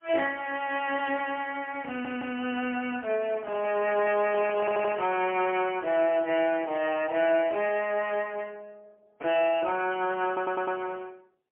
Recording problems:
telephone audio; 260 Hz to 3.1 kHz, AMR-NB, then MP3
stutter; at 2 s, at 4.5 s and at 10 s
handling noise; from 3.5 to 5 s; peak -11 dB vs average level

